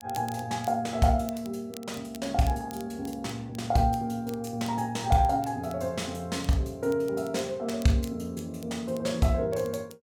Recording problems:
crackle; vinyl, SNR 22 dB

